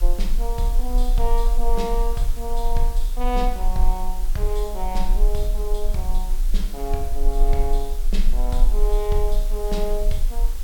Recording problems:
background hiss; slope -2 dB per octave, SNR 12 dB
low-frequency rumble; below 34 Hz, strongest tone 18 Hz, SNR -4 dB

